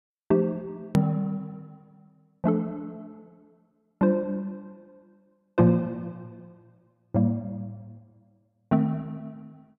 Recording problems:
hard cut with a click; at 1 s

